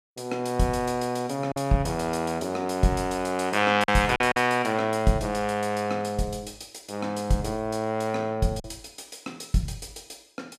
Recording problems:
lost packets; 2% of the sound replaced, filled with silence

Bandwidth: 15.5 kHz